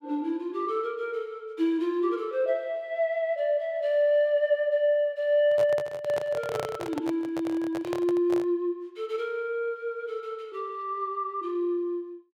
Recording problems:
microphone handling noise; from 5.5 to 8.5 s; peak -2 dB vs average level

